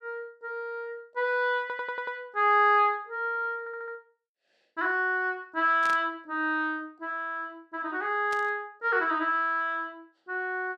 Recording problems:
stutter; at 1.5 s and at 3.5 s
static burst; at 6 s and at 8.5 s; peak -8 dB vs average level

